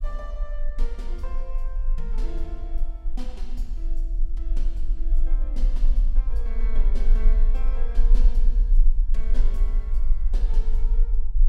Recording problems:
low-frequency rumble; below 34 Hz, strongest tone 22 Hz, SNR -16 dB

